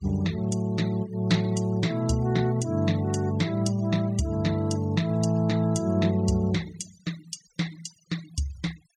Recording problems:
denoising artefacts; signal-to-artefact ratio 20 dB

